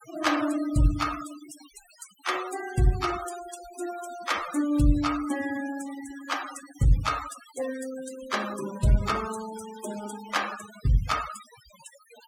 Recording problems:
denoising artefacts; signal-to-artefact ratio 12 dB

